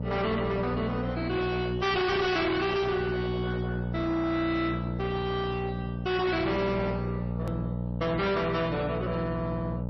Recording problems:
lossy codec; MP3, log-spectral distance 2 dB, nothing above 5.5 kHz
distorted audio; soft clipping, signal-to-distortion ratio 7 dB
electrical hum; 60 Hz, harmonics up to 900 Hz, SNR 4 dB
click at an edit; at 7.5 s

